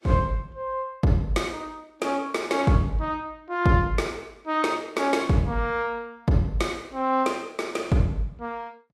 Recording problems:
codec artefacts; Vorbis, log-spectral distance 2 dB, nothing above 12.7 kHz

